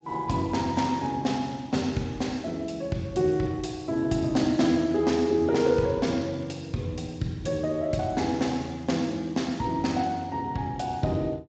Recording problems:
codec artefacts; Speex, log-spectral distance 3 dB, nothing above 7.6 kHz

